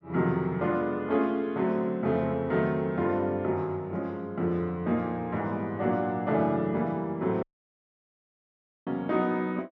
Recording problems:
dropout; at 7.5 s for 1.5 s

